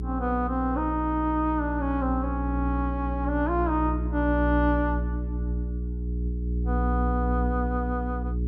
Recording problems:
electrical hum; 60 Hz, harmonics up to 420 Hz, SNR 2 dB

